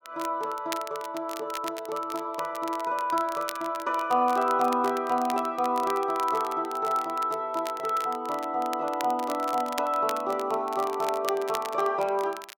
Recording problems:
crackling; vinyl, SNR 15 dB

